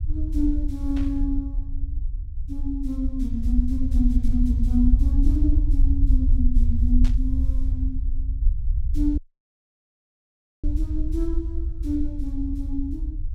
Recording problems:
low-frequency rumble; below 60 Hz, SNR -4 dB
static burst; at 1 s and at 7 s; peak -8 dB vs average level
audio cutting out; at 9 s for 1.5 s

